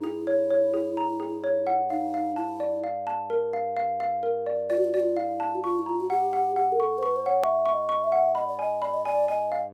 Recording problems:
electrical hum; 50 Hz, harmonics up to 1.6 kHz, SNR 24 dB
hard cut with a click; at 7.5 s

